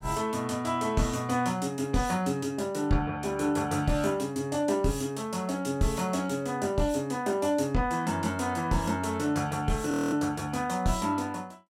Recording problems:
frozen audio; at 10 s

